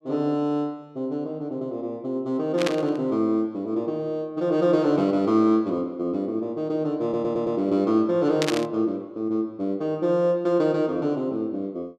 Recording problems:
burst of static; at 2.5 s and at 8.5 s; peak +2 dB vs average level
stutter; at 7 s

